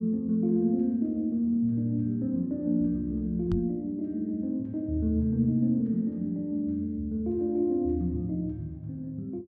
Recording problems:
microphone thump; at 3.5 s; peak 0 dB vs average level

